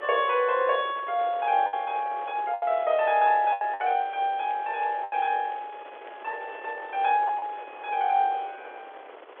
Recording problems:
telephone audio; 340 Hz to 3.5 kHz, G.711
wind noise; below 1.3 kHz, SNR 19 dB
lost packets; 5% of the sound replaced, filled with the last packet
crackle; from 2.5 to 6.5 s; loose cable, SNR 30 dB

